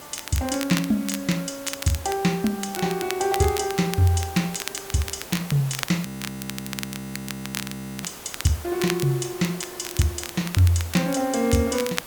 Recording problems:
background hiss; slope -4 dB per octave, SNR 14 dB
crackle; vinyl, SNR 10 dB
frozen audio; at 6 s for 2 s

